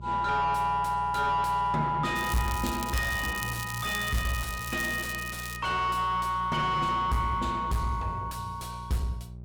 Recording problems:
distortion; soft clipping, signal-to-distortion ratio 6 dB
hum; 60 Hz, harmonics up to 600 Hz, SNR 14 dB
crackling; from 2 to 5.5 s; loose cable, SNR 10 dB

